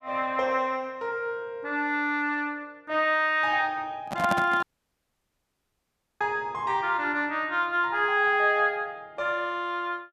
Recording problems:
microphone handling noise; at 4 s; peak +2 dB vs average level
dropout; at 4.5 s for 1.5 s

